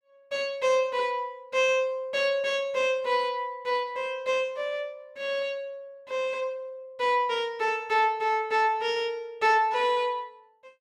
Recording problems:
none

